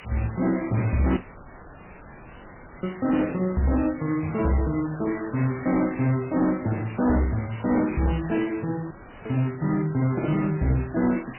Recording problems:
lossy compression; MP3, log-spectral distance 11 dB, nothing above 2.9 kHz
distortion; hard clipping, uneven, signal-to-distortion ratio 11 dB
hiss; SNR 17 dB
dropout; at 1 s for 1.5 s and at 9 s
crackle; from 3 to 5.5 s, from 6.5 to 9 s and at 10 s; loose cable, SNR 27 dB

